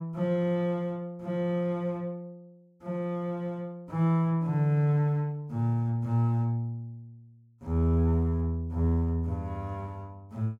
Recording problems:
none

